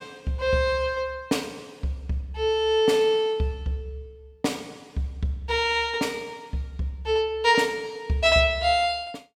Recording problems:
none

